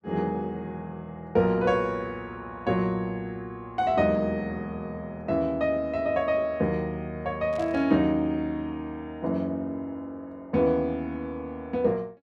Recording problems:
burst of static; at 7.5 s; peak -15 dB vs average level

